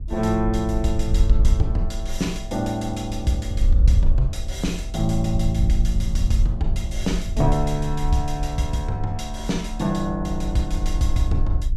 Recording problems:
wind noise; below 60 Hz, SNR 1 dB

